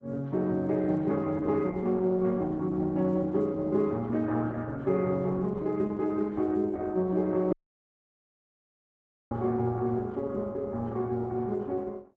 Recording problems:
lossy compression; Opus, log-spectral distance 2 dB
dropout; at 7.5 s for 2 s

